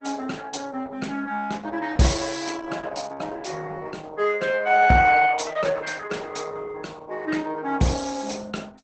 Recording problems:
codec artefacts; Opus, log-spectral distance 5 dB, nothing above 8 kHz

